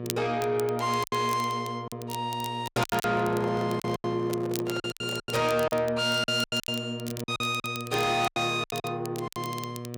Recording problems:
distortion; soft clipping, signal-to-distortion ratio 11 dB
hum; 60 Hz, harmonics up to 1.2 kHz, SNR 9 dB
crackling; vinyl, SNR 15 dB
packet loss; 13% of the sound replaced, filled with silence
handling noise; from 3 to 5.5 s; peak -6 dB vs average level

